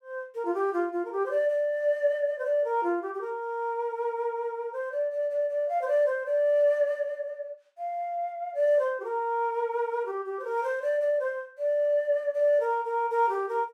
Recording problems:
none

